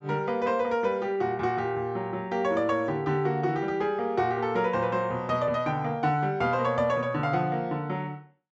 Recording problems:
treble missing; nothing above 8 kHz

